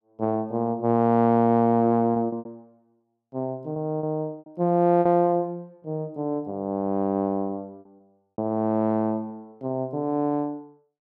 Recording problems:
lost packets; 5% of the sound replaced, filled with repeated pitch periods

